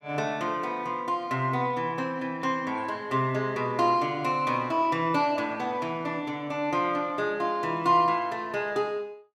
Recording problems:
none

